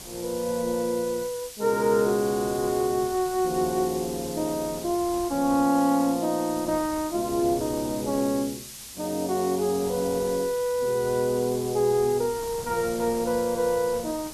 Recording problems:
background hiss; slope +5 dB per octave, SNR 13 dB
wind noise; below 750 Hz, SNR 21 dB

